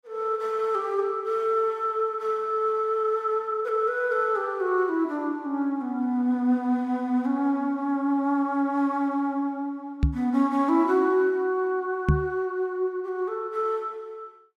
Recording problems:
knock on the microphone; at 10 s and at 12 s; peak +8 dB vs average level

